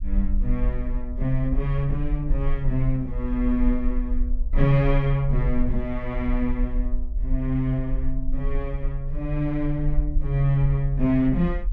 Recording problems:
low-frequency rumble; below 44 Hz, SNR 4 dB

